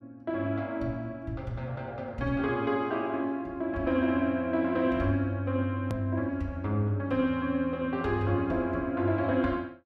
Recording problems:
hard cut with a click; at 6 s

